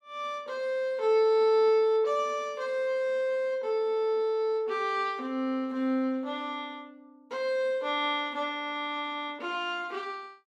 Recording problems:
none

